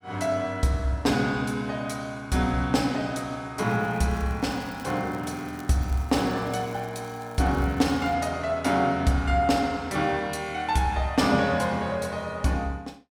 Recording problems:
crackle; from 3.5 to 8 s; loose cable, SNR 26 dB

